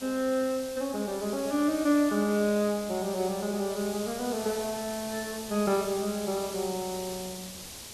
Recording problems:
background hiss; SNR 11 dB

